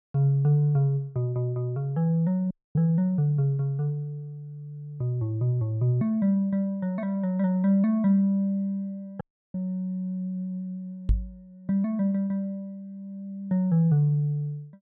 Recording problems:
dropout; at 2.5 s and at 9 s
microphone thump; at 11 s; peak +5 dB vs average level

